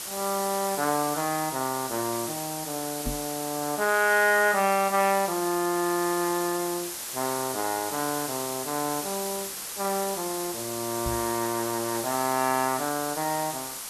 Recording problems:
hiss; slope 0 dB per octave, SNR 5 dB
knock on the microphone; at 3 s and at 11 s; peak -1 dB vs average level

